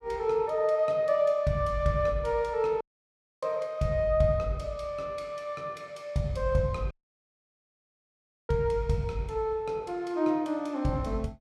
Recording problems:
audio cutting out; at 3 s for 0.5 s and at 7 s for 1.5 s

